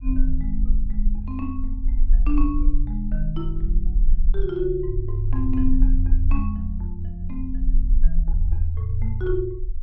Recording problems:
rumble; below 38 Hz, strongest tone 24 Hz, SNR -2 dB

